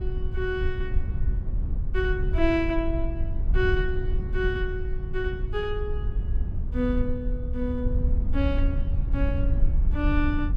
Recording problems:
low-frequency rumble; below 70 Hz, SNR -1 dB

